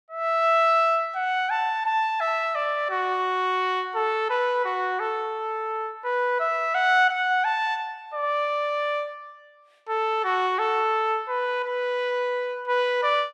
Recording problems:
none

